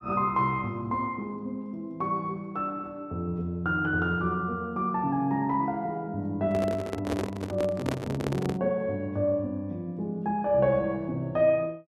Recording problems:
microphone handling noise; from 6.5 to 8.5 s; peak +2 dB vs average level

